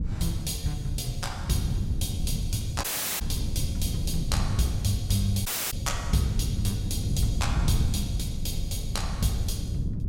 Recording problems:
wind on the microphone; below 130 Hz, SNR 1 dB
audio cutting out; at 3 s and at 5.5 s

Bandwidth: 16.5 kHz